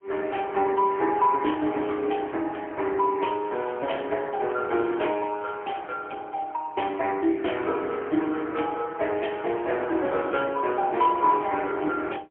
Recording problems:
telephone audio; 260 Hz to 3.2 kHz, AMR-NB, then MP3

